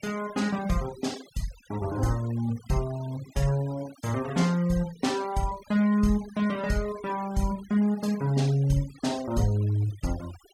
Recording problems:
denoising artefacts; signal-to-artefact ratio 19 dB

